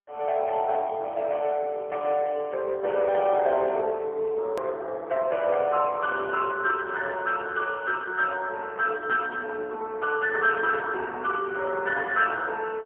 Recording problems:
phone line; 320 Hz to 3 kHz, AMR-NB, then MP3
click at an edit; at 4.5 s

